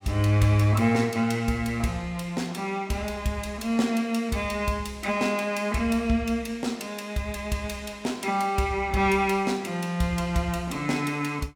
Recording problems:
none

